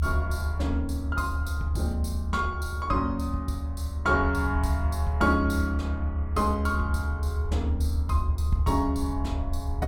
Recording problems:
low-frequency rumble; below 78 Hz, strongest tone 76 Hz, SNR 0 dB

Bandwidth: 17 kHz